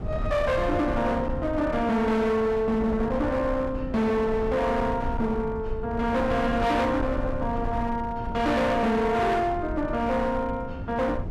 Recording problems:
distortion; hard clipping, uneven, signal-to-distortion ratio 8 dB
rumble; below 200 Hz, SNR 9 dB

